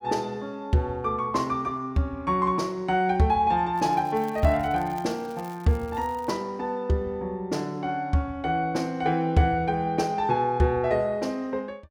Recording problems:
crackle; from 4 to 6.5 s; loose cable, SNR 26 dB

